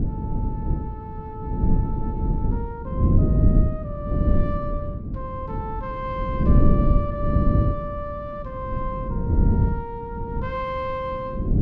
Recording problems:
hum; 50 Hz, harmonics up to 350 Hz, SNR 15 dB
wind on the microphone; below 170 Hz, SNR -8 dB

